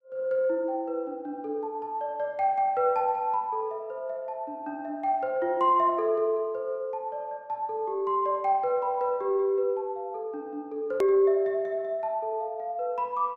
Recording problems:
edit click; at 11 s

